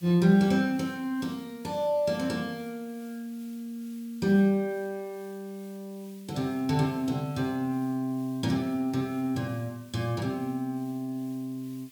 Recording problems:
hiss; slope +2 dB per octave, SNR 25 dB

